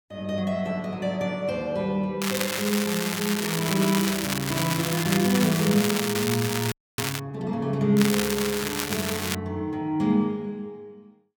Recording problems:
crackle; from 2 to 7 s and from 8 to 9.5 s; loose cable, SNR 3 dB
frozen audio; at 6.5 s

